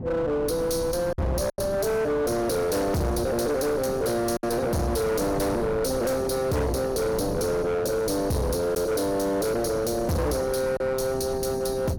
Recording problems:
distorted audio; hard clipping, signal-to-distortion ratio 7 dB
wind on the microphone; below 350 Hz, SNR 11 dB
packet loss; 1.9% of the sound replaced, filled with silence

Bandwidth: 17.5 kHz